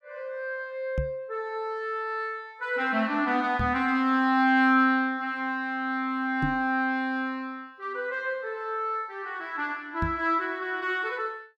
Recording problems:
microphone bump; 4 times, first at 1 s; peak +1 dB vs average level

